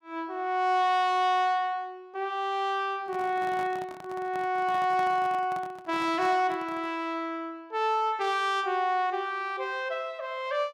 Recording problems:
microphone handling noise; from 3 to 7 s; peak -9 dB vs average level

